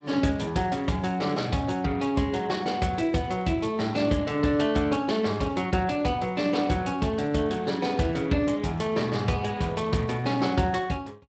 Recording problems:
lossy compression; Speex, log-spectral distance 4 dB, nothing above 7.8 kHz

